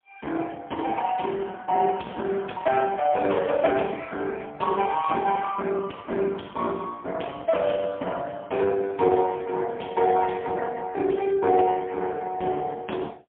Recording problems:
phone line; 190 Hz to 3.4 kHz, AMR-NB, then MP3

